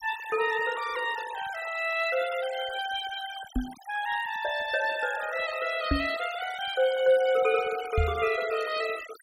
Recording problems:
denoising artefacts; signal-to-artefact ratio 14 dB
microphone thump; at 3.5 s, at 6 s and at 8 s; peak +5 dB vs average level

